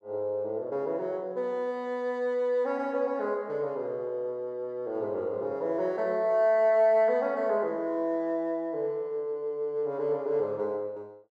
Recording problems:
none

